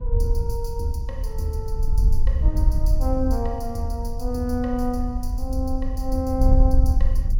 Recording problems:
wind noise; below 60 Hz, SNR -3 dB

